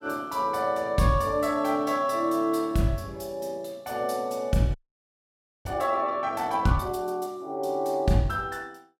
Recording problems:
audio freezing; at 4.5 s for 1 s

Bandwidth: 16.5 kHz